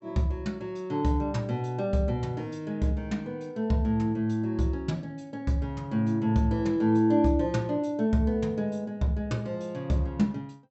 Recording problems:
treble cut off; nothing above 7.8 kHz

